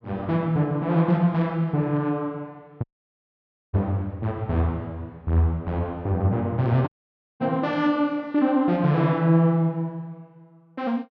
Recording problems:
dropout; at 3 s for 1 s and at 7 s for 0.5 s

